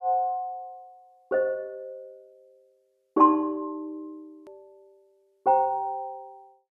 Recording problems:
click at an edit; at 4.5 s

